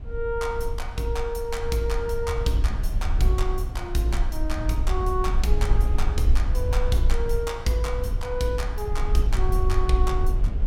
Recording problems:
rumble; below 58 Hz, SNR 0 dB

